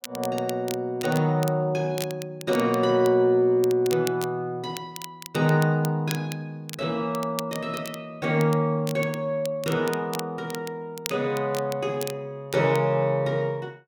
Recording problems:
crackling; vinyl, SNR 15 dB

